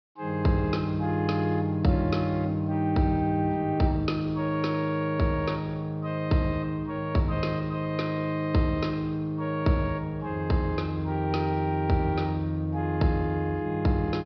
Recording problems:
low-pass filter; nothing above 5.5 kHz

